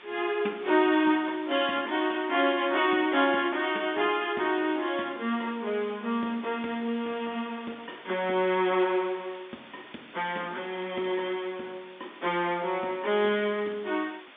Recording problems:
telephone audio; 190 Hz to 3.6 kHz, G.711
background hiss; SNR 21 dB

